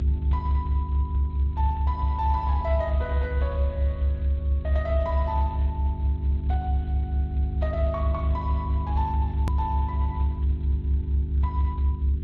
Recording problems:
codec artefacts; Speex, log-spectral distance 2 dB
mains hum; 50 Hz, harmonics up to 400 Hz, SNR 3 dB
rumble; below 72 Hz, strongest tone 70 Hz, SNR -7 dB
edit click; at 9.5 s

